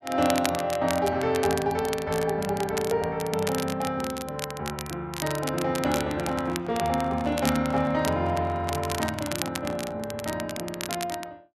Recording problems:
crackling; vinyl, SNR 9 dB
handling noise; from 6 to 10 s; peak -8 dB vs average level

